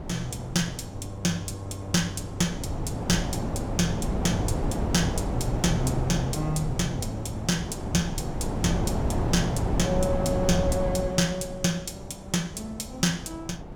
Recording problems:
wind on the microphone; below 390 Hz, SNR 2 dB

